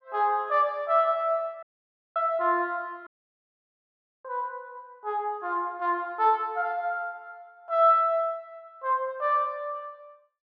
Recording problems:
audio cutting out; at 1.5 s for 0.5 s and at 3 s for 1 s

